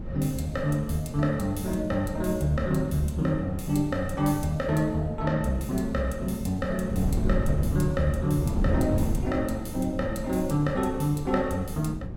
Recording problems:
wind on the microphone; below 170 Hz, SNR 6 dB

